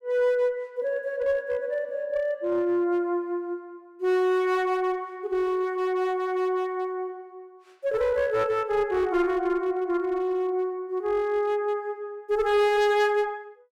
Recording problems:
distorted audio; hard clipping, uneven, signal-to-distortion ratio 10 dB

